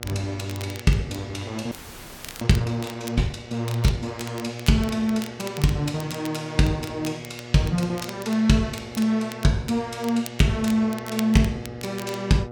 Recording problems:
hum; 60 Hz, harmonics up to 1.4 kHz, SNR 15 dB
crackling; vinyl, SNR 17 dB
frozen audio; at 1.5 s for 0.5 s

